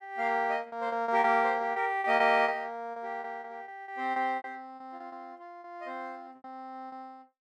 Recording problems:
packet loss; 13% of the sound replaced, filled with repeated pitch periods

